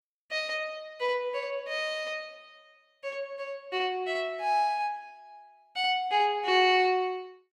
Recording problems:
none

